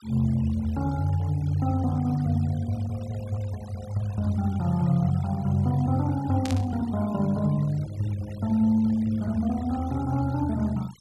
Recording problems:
denoising artefacts; signal-to-artefact ratio 23 dB
burst of static; at 6.5 s; peak -6 dB vs average level

